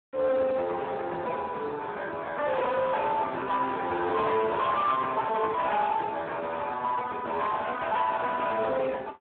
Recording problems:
telephone audio; 300 Hz to 3.7 kHz, Speex
distorted audio; soft clipping, signal-to-distortion ratio 10 dB

